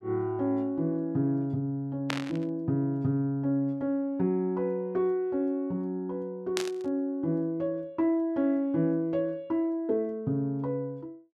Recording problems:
burst of static; at 2 s and at 6.5 s; peak +2 dB vs average level

